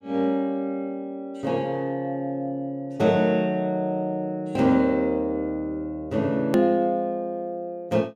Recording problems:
hard cut with a click; at 6.5 s

